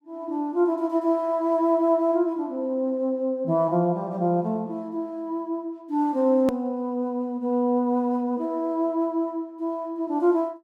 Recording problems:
click at an edit; at 6.5 s

